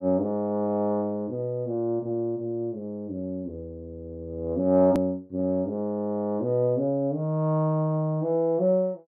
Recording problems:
hard cut with a click; at 5 s

